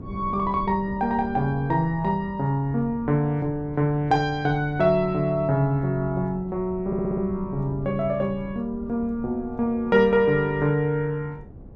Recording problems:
wind noise; below 230 Hz, SNR 17 dB
stutter; at 7 s

